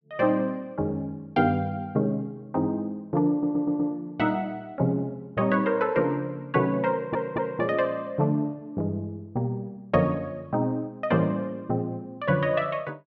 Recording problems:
audio stuttering; at 3.5 s and at 7 s

